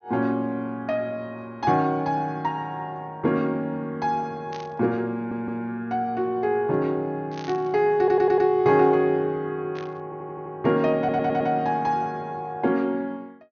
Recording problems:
treble cut off; nothing above 6.5 kHz
static burst; at 4.5 s, at 7.5 s and at 10 s; peak -12 dB vs average level
stutter; 4 times, first at 5 s

